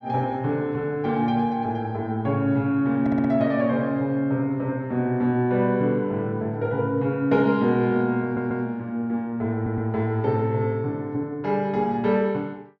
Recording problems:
audio stuttering; at 3 s, at 8 s and at 9.5 s

